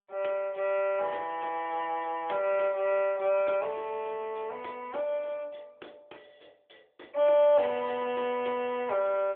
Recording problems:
telephone audio; 300 Hz to 3.4 kHz, AMR-NB

